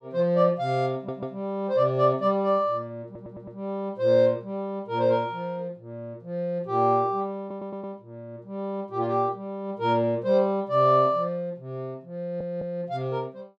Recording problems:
audio stuttering; 4 times, first at 1 s

